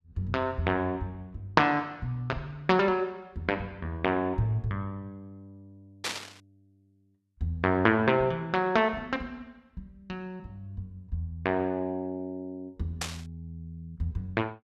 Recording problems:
static burst; at 6 s and at 13 s; peak +2 dB vs average level

